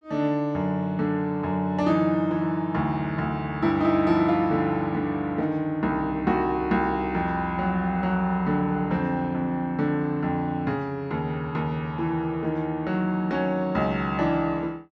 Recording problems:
none

